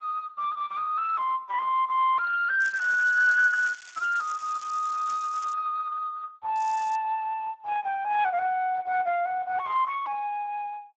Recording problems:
lossy codec; Speex, log-spectral distance 3 dB
crackle; from 2.5 to 5.5 s and at 6.5 s; loose cable, SNR 20 dB

